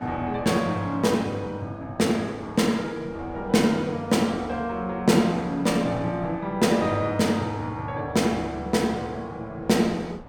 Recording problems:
wind on the microphone; below 730 Hz, SNR 22 dB

